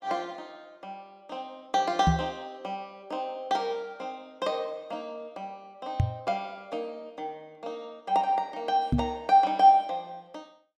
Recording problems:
knock on the microphone; at 2 s, at 6 s and at 9 s; peak +8 dB vs average level

